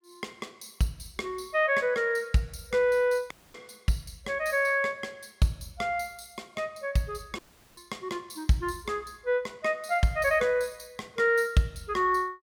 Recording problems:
audio cutting out; at 3.5 s and at 7.5 s

